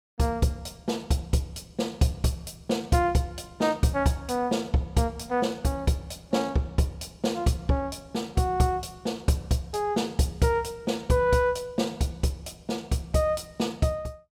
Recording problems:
none

